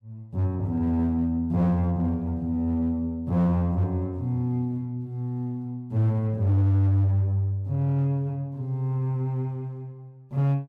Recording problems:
distorted audio; hard clipping, signal-to-distortion ratio 12 dB

